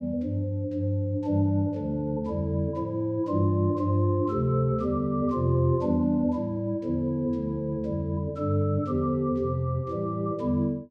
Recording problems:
none

